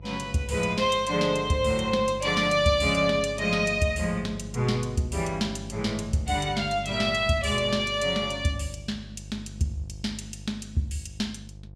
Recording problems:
hum; 50 Hz, harmonics up to 500 Hz, SNR 15 dB

